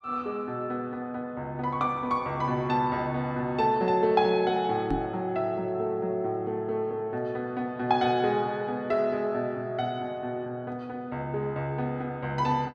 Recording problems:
knock on the microphone; at 5 s; peak +2 dB vs average level

